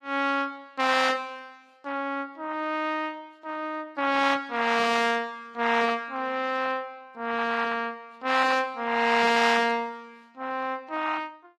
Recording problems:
lossy codec; AAC, log-spectral distance 3 dB, nothing above 15.5 kHz

